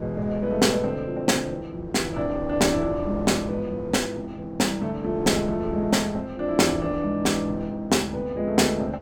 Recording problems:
wind on the microphone; below 530 Hz, SNR 14 dB

